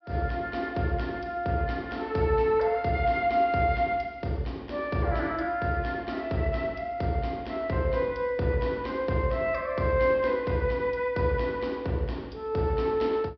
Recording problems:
treble cut off; nothing above 5.5 kHz

